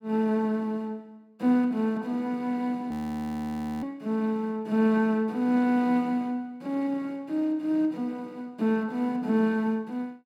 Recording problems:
frozen audio; at 3 s for 1 s

